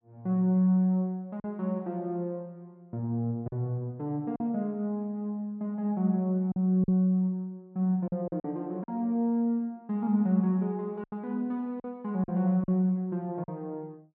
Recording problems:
lost packets; 4% of the sound replaced, filled with silence

